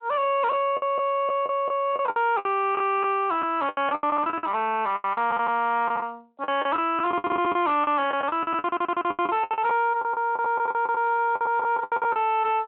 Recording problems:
telephone audio; 260 Hz to 3.3 kHz, Speex
distortion; soft clipping, signal-to-distortion ratio 9 dB
lost packets; 17% of the sound replaced, filled with the last packet
stutter; at 8.5 s

